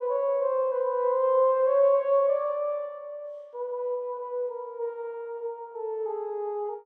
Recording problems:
none

